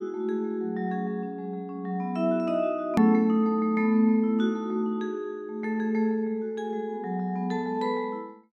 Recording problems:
click at an edit; at 3 s

